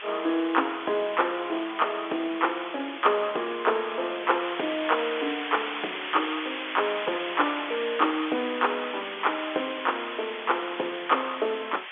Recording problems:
telephone audio; 260 Hz to 3.5 kHz, G.711
hiss; SNR 7 dB

